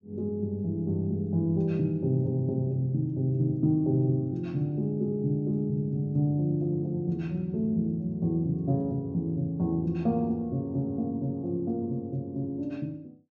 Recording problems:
treble cut off; nothing above 8 kHz

